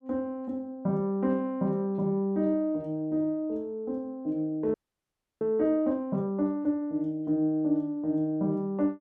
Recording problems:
frozen audio; at 4.5 s for 0.5 s

